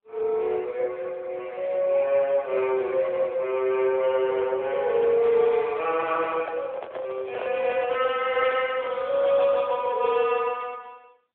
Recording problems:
telephone audio; 320 Hz to 3.4 kHz, AMR-NB
microphone handling noise; from 5.5 to 9 s; peak -7 dB vs average level

